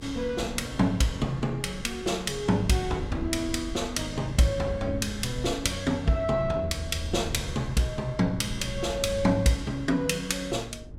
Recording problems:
hum; 50 Hz, harmonics up to 450 Hz, SNR 20 dB
low-frequency rumble; below 110 Hz, SNR 14 dB

